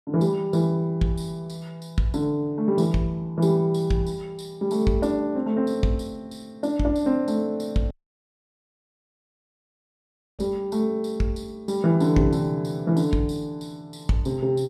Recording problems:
audio cutting out; at 8 s for 2.5 s

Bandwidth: 14 kHz